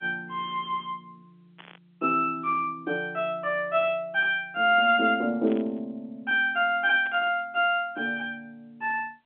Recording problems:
phone line; 240 Hz to 3.5 kHz, G.711
static burst; at 1.5 s, at 5.5 s and at 7 s; peak -14 dB vs average level

